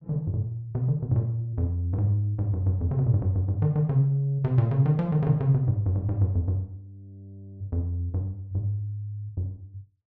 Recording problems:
none

